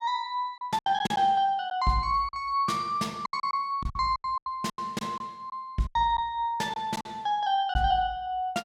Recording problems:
lost packets; 10% of the sound replaced, filled with silence

